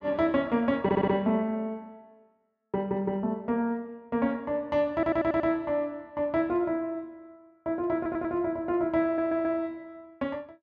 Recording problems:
audio stuttering; 4 times, first at 1 s

